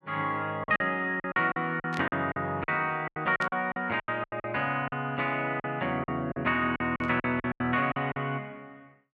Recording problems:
packet loss; 14% of the sound replaced, filled with silence
static burst; at 2 s, at 3.5 s and at 7 s; peak -6 dB vs average level

